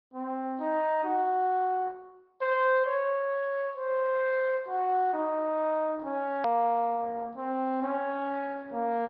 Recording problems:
treble missing; nothing above 5.2 kHz
lossy codec; Opus, log-spectral distance 2 dB
hard cut with a click; at 6.5 s

